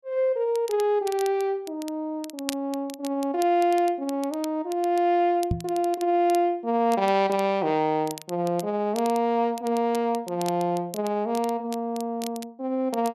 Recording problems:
crackle; vinyl, SNR 18 dB
knock on the microphone; at 5.5 s; peak +3 dB vs average level

